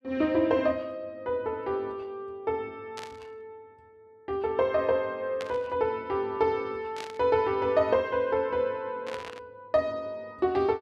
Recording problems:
static burst; 4 times, first at 3 s; peak -6 dB vs average level

